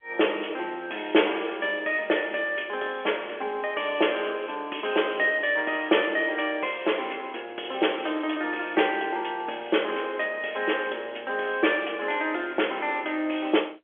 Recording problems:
phone line; 280 Hz to 3.4 kHz, G.711

